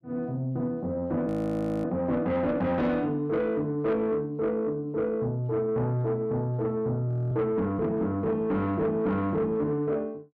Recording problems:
distortion; soft clipping, signal-to-distortion ratio 11 dB
audio freezing; at 1.5 s for 0.5 s and at 7 s

